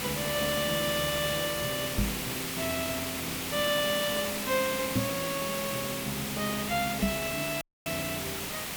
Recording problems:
background hiss; slope -2 dB per octave, SNR 1 dB
microphone thump; at 2 s, at 5 s and at 7 s; peak +7 dB vs average level
audio cutting out; at 7.5 s

